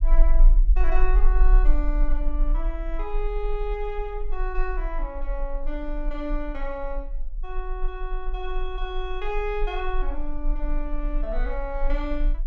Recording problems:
rumble; below 36 Hz, SNR -5 dB

